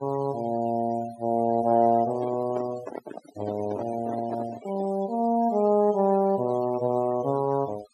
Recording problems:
denoising artefacts; signal-to-artefact ratio 19 dB
handling noise; from 2 to 5 s; peak -6 dB vs average level

